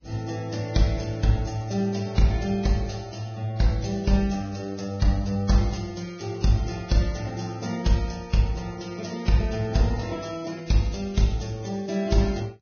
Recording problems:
codec artefacts; Vorbis, log-spectral distance 5 dB, nothing above 6.5 kHz

